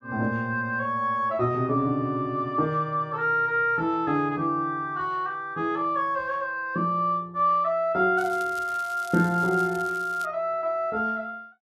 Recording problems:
crackling; from 8 to 10 s; loose cable, SNR 21 dB

